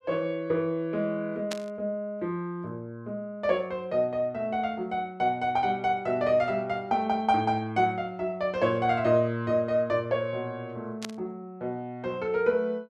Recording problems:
static burst; at 1.5 s and at 11 s; peak -2 dB vs average level

